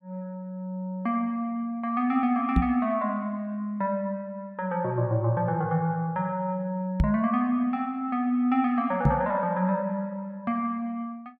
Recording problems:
microphone bump; at 2.5 s, at 7 s and at 9 s; peak +9 dB vs average level

